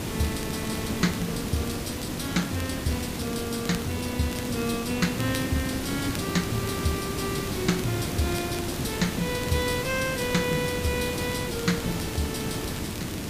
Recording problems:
hiss; SNR 2 dB
crackling; vinyl, SNR 16 dB

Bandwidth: 15 kHz